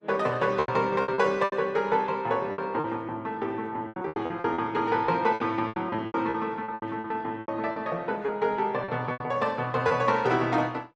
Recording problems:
lossy codec; Opus, log-spectral distance 2 dB, nothing above 11.3 kHz
lost packets; 13% of the sound replaced, filled with repeated pitch periods

